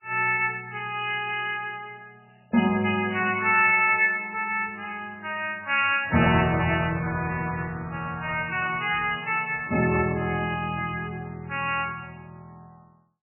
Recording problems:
lossy compression; MP3, then MP3, log-spectral distance 4 dB, nothing above 2.5 kHz

